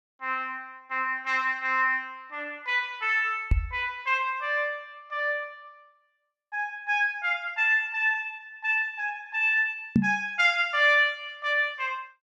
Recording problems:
microphone bump; at 3.5 s and at 10 s; peak +8 dB vs average level

